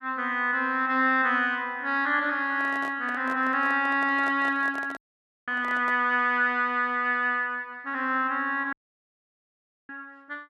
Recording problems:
handling noise; from 2.5 to 6 s; peak -10 dB vs average level
audio cutting out; at 5 s for 0.5 s and at 8.5 s for 1 s

